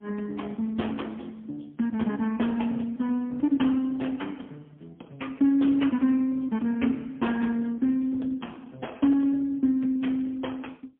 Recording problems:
telephone audio; 190 Hz to 3.5 kHz, AMR-NB, then MP3

